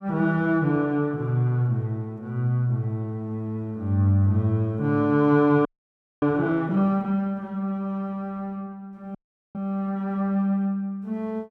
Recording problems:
frozen audio; at 5.5 s for 0.5 s and at 9 s

